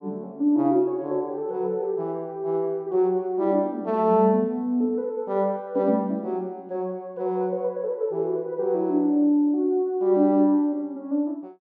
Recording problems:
none

